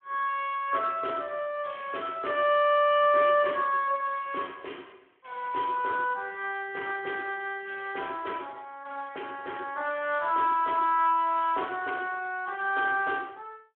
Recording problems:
phone line; 280 Hz to 3.3 kHz, Speex

